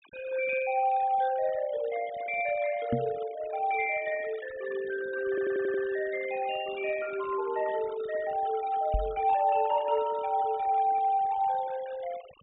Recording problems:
treble cut off; nothing above 4 kHz
noise reduction artefacts; signal-to-artefact ratio 19 dB
microphone thump; at 3 s and at 9 s; peak +3 dB vs average level
stutter; at 5.5 s

